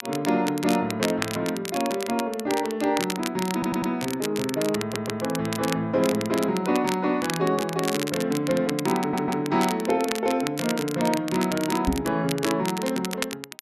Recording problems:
crackling; vinyl, SNR 9 dB
audio stuttering; at 3.5 s, at 5 s and at 9 s
microphone bump; at 12 s; peak +4 dB vs average level

